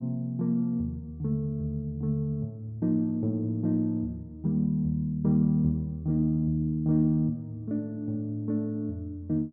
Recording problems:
none

